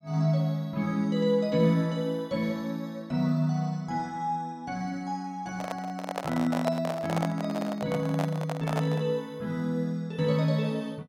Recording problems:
handling noise; from 5.5 to 9 s; peak +2 dB vs average level

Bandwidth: 16.5 kHz